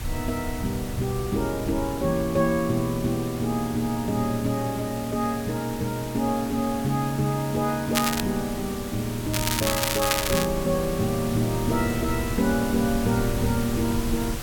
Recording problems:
hiss; slope -3 dB per octave, SNR 11 dB
wind on the microphone; below 100 Hz, SNR 12 dB
crackling; at 8 s and from 9.5 to 10 s; loose cable, SNR 1 dB

